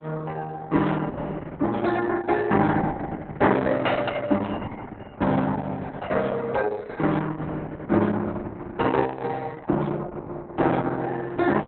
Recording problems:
lossy codec; Opus, log-spectral distance 4 dB, nothing above 4 kHz

